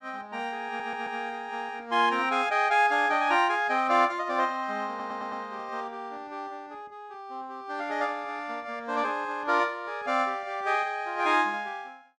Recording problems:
audio stuttering; at 0.5 s and at 5 s

